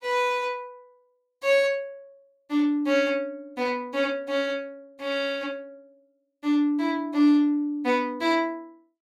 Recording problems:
none

